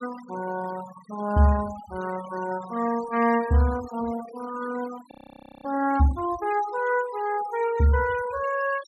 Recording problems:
noise reduction artefacts; signal-to-artefact ratio 16 dB
frozen audio; at 5 s for 0.5 s

